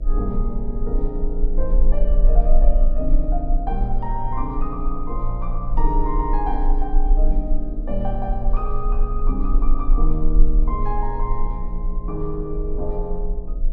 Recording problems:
hum; 60 Hz, harmonics up to 660 Hz, SNR 13 dB
low-frequency rumble; below 34 Hz, strongest tone 24 Hz, SNR -4 dB

